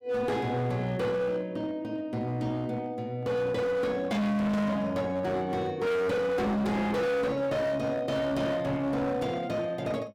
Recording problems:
distortion; hard clipping, uneven, signal-to-distortion ratio 7 dB

